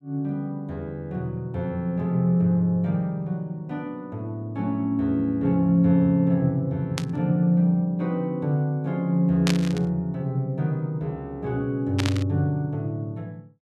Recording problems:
burst of static; at 7 s, at 9.5 s and at 12 s; peak +1 dB vs average level

